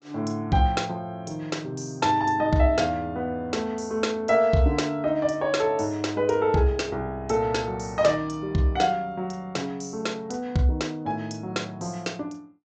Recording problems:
low-pass filter; nothing above 8 kHz

